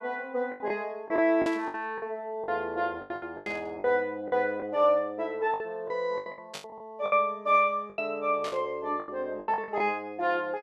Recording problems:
packet loss; 13% of the sound replaced, filled with the last packet
static burst; 4 times, first at 1.5 s; peak -6 dB vs average level

